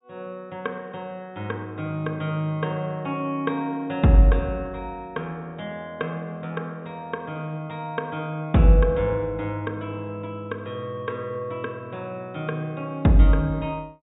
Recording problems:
treble cut off; nothing above 4 kHz

